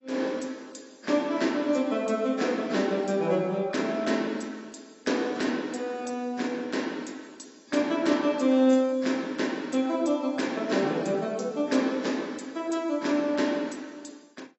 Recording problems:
codec artefacts; AAC, log-spectral distance 4 dB, nothing above 7.8 kHz

